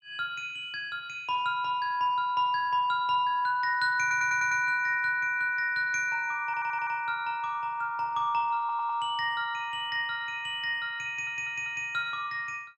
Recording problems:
audio stuttering; 4 times, first at 4 s

